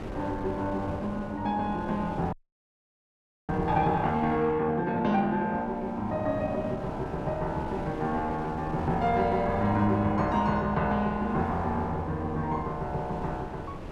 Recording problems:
wind noise; below 550 Hz, SNR 13 dB
frozen audio; at 2.5 s for 1 s

